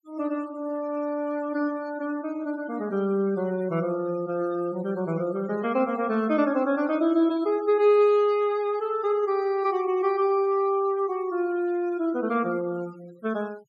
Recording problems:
denoising artefacts; signal-to-artefact ratio 24 dB

